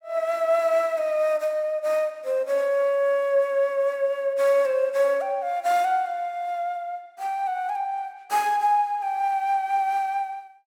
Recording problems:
none

